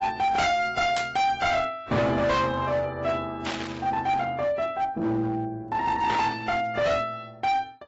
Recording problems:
lossy compression; AAC, log-spectral distance 2 dB, nothing above 7.3 kHz
distortion; hard clipping, uneven, signal-to-distortion ratio 7 dB
static burst; at 1 s, at 3.5 s and at 6 s; peak -2 dB vs average level

